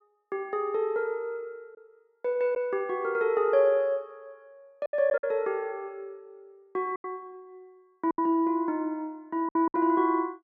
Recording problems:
lost packets; 5% of the sound replaced, filled with silence

